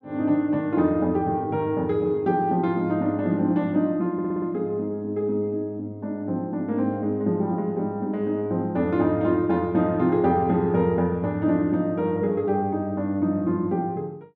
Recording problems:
audio stuttering; at 4 s

